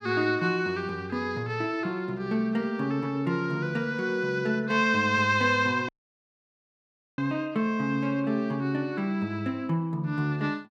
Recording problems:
dropout; at 6 s for 1.5 s

